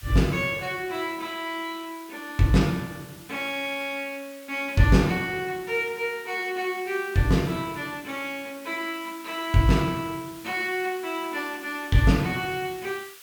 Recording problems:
hiss; SNR 19 dB

